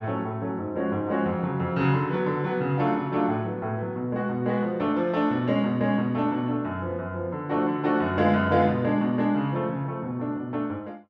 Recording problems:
none

